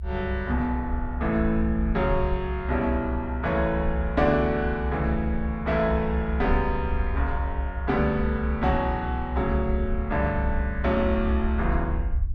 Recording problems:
low-frequency rumble; below 68 Hz, SNR 4 dB

